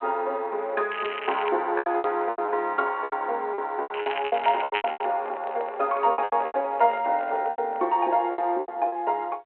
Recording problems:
telephone audio; 320 Hz to 3.3 kHz, G.726
packet loss; 14% of the sound replaced, filled with repeated pitch periods
crackling; at 1 s and from 4 to 5 s; loose cable, SNR 10 dB
handling noise; from 4.5 to 8 s; peak -6 dB vs average level

